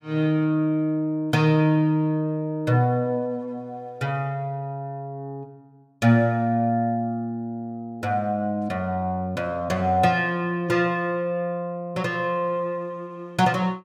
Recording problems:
none

